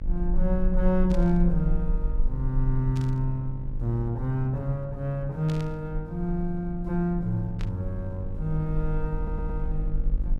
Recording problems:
electrical hum; 50 Hz, harmonics up to 650 Hz, SNR 12 dB
low-frequency rumble; below 40 Hz, strongest tone 22 Hz, SNR 5 dB
static burst; 4 times, first at 1 s; peak -10 dB vs average level
stutter; at 9 s

